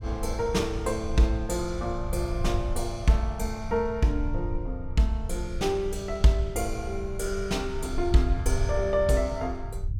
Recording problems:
low-frequency rumble; below 74 Hz, SNR 7 dB

